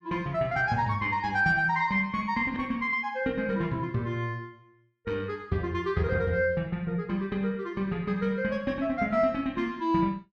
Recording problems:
none

